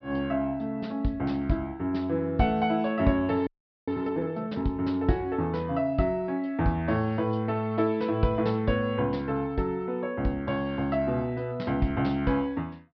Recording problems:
treble cut off; nothing above 5.5 kHz
audio freezing; at 3.5 s

